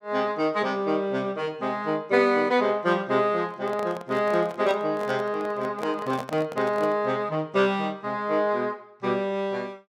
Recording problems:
handling noise; from 3.5 to 7 s; peak -5 dB vs average level

